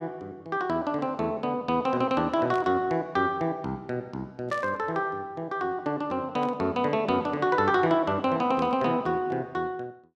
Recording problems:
burst of static; 4 times, first at 2.5 s; peak -12 dB vs average level

